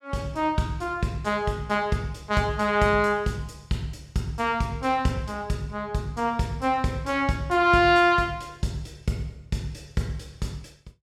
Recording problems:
none

